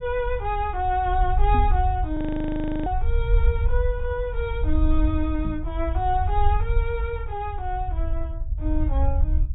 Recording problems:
treble missing; nothing above 4 kHz
rumble; below 66 Hz, SNR -1 dB
microphone thump; at 1.5 s and at 5.5 s; peak 0 dB vs average level
audio freezing; at 2 s for 0.5 s

